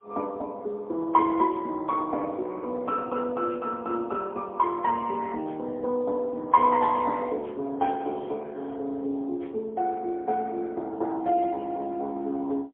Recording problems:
phone line; 240 Hz to 2.1 kHz, AMR-NB, then MP3

